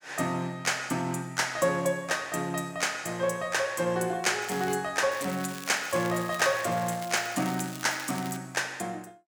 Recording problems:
crackle; at 4.5 s and from 5 to 8.5 s; loose cable, SNR 14 dB

